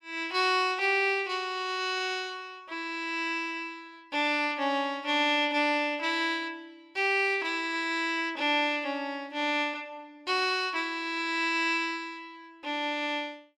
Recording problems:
none

